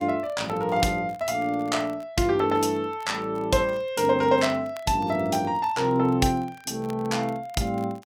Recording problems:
crackling; vinyl, SNR 28 dB

